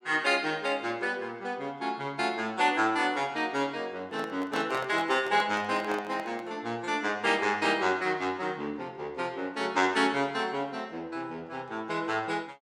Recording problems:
microphone handling noise; from 4 to 6.5 s; peak -5 dB vs average level

